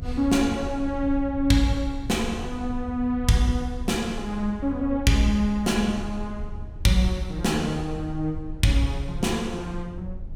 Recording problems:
low-frequency rumble; below 76 Hz, strongest tone 24 Hz, SNR 12 dB

